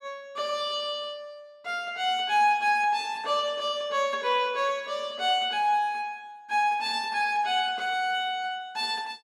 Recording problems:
none

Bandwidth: 15.5 kHz